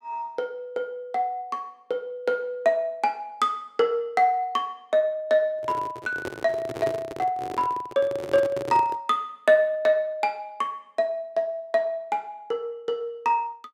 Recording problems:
microphone handling noise; from 5.5 to 9 s; peak -2 dB vs average level

